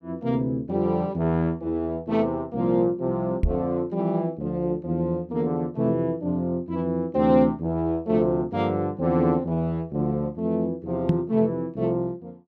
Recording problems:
microphone bump; at 3.5 s and at 11 s; peak +6 dB vs average level

